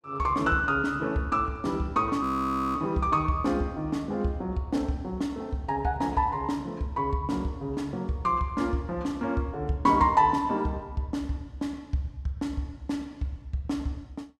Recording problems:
audio freezing; at 2 s for 0.5 s

